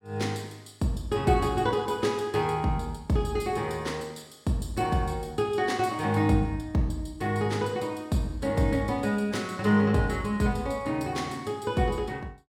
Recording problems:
none

